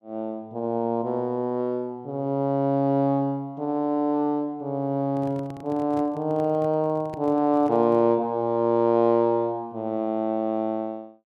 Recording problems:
microphone handling noise; from 5 to 8 s; peak -10 dB vs average level

